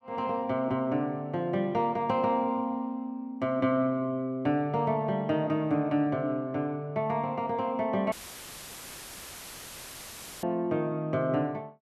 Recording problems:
dropout; at 8 s for 2.5 s; filled with static

